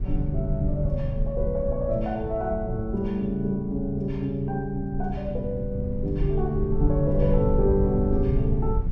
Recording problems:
low-frequency rumble; below 82 Hz, SNR 4 dB

